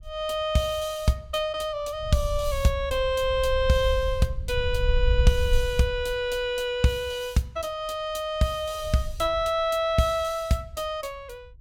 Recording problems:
wind noise; below 64 Hz, SNR 5 dB

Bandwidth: 17 kHz